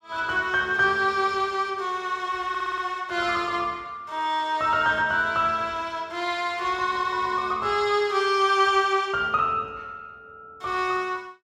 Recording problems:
audio stuttering; at 2.5 s

